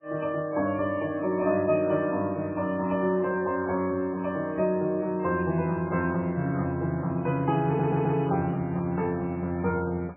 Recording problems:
codec artefacts; MP3, log-spectral distance 2 dB, nothing above 2.5 kHz
stutter; at 7.5 s

